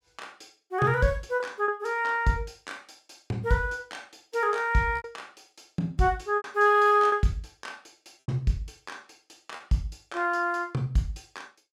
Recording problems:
lost packets; 4% of the sound replaced, filled with repeated pitch periods

